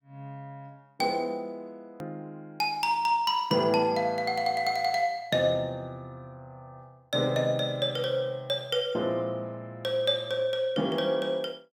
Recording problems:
edit click; at 2 s

